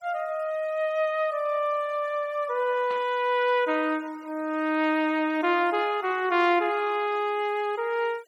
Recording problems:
denoising artefacts; signal-to-artefact ratio 25 dB
burst of static; at 3 s; peak -13 dB vs average level

